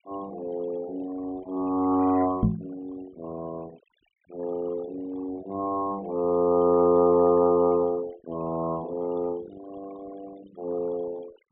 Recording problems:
treble cut off; nothing above 3.7 kHz
noise reduction artefacts; signal-to-artefact ratio 21 dB
knock on the microphone; at 2.5 s; peak +7 dB vs average level

